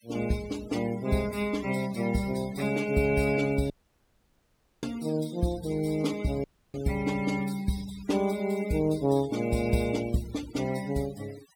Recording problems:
noise reduction artefacts; signal-to-artefact ratio 17 dB
audio cutting out; at 3.5 s for 1 s and at 6.5 s

